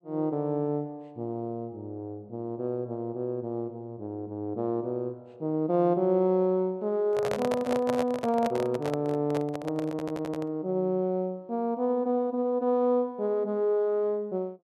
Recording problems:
microphone handling noise; from 7 to 11 s; peak 0 dB vs average level
stutter; at 10 s

